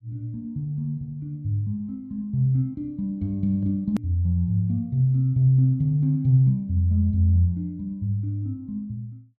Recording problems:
click at an edit; at 4 s

